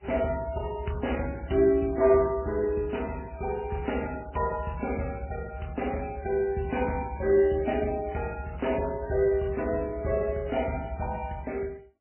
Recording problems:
lossy compression; MP3, then MP3, log-spectral distance 5 dB, nothing above 2.8 kHz

